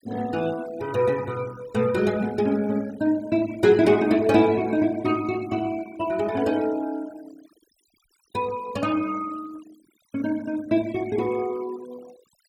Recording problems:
noise reduction artefacts; signal-to-artefact ratio 21 dB

